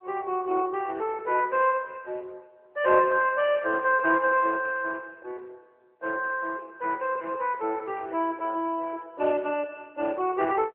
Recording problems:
telephone audio; 300 Hz to 3.3 kHz, AMR-NB

